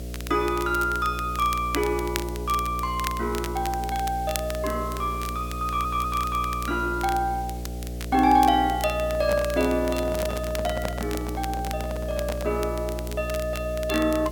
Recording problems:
mains hum; 60 Hz, harmonics up to 720 Hz, SNR 8 dB
background hiss; slope +3 dB per octave, SNR 20 dB
crackle; vinyl, SNR 13 dB
stutter; at 5.5 s
microphone handling noise; from 9 to 13 s; peak -1 dB vs average level

